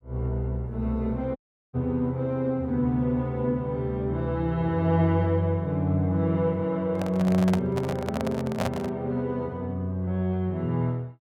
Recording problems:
audio cutting out; at 1.5 s
handling noise; from 7 to 9 s; peak +2 dB vs average level

